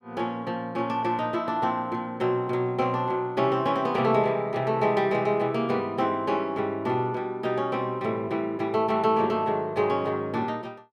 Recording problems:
none

